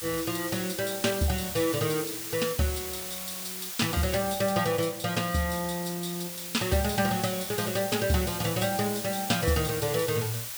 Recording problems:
background hiss; slope +2 dB per octave, SNR 6 dB

